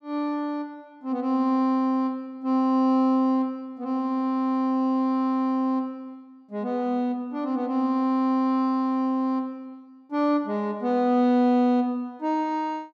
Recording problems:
none

